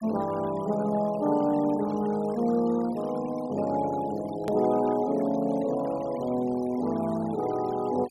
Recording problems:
denoising artefacts; signal-to-artefact ratio 20 dB
click at an edit; at 4.5 s

